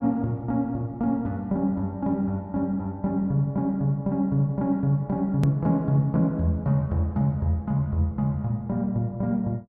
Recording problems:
hard cut with a click; at 5.5 s

